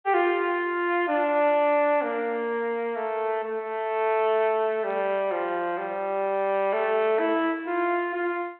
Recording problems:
telephone audio; 260 Hz to 3.5 kHz, G.726

